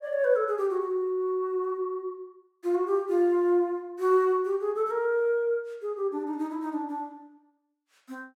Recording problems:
none

